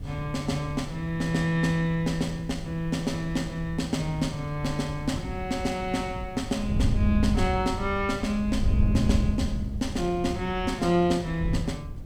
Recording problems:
hiss; slope -6 dB per octave, SNR 29 dB
wind on the microphone; below 120 Hz, SNR 5 dB

